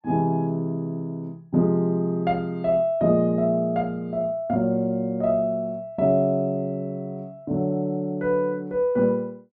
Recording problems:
none

